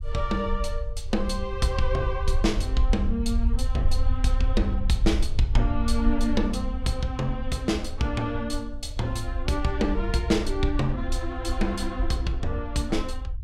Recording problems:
rumble; below 60 Hz, SNR 2 dB

